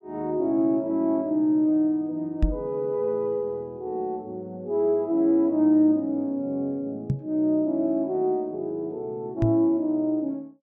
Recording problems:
knock on the microphone; at 2.5 s, at 7 s and at 9.5 s; peak +5 dB vs average level

